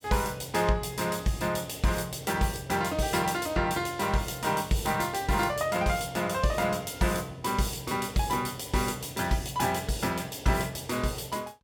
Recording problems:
none

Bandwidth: 17.5 kHz